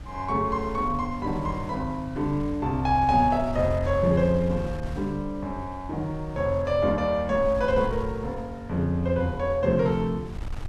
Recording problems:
wind noise; below 110 Hz, SNR 13 dB

